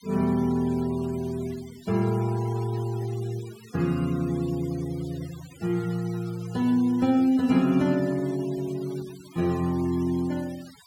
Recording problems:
noise reduction artefacts; signal-to-artefact ratio 20 dB

